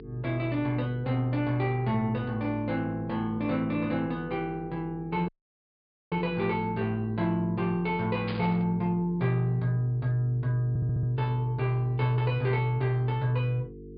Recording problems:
treble missing; nothing above 5 kHz
hum; 50 Hz, harmonics up to 450 Hz, SNR 16 dB
audio cutting out; at 5.5 s for 1 s
static burst; at 8.5 s; peak -6 dB vs average level
stutter; at 11 s

